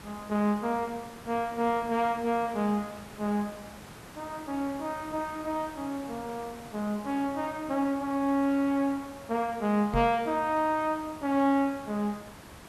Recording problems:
background hiss; slope -4 dB per octave, SNR 17 dB
knock on the microphone; at 10 s; peak 0 dB vs average level

